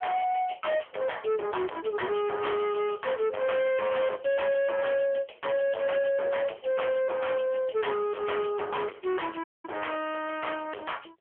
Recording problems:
telephone audio; 320 Hz to 3.3 kHz, AMR-NB
distortion; hard clipping, signal-to-distortion ratio 7 dB
dropout; at 9.5 s

